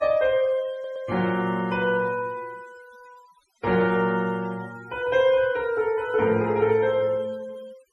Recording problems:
denoising artefacts; signal-to-artefact ratio 23 dB
audio stuttering; at 0.5 s

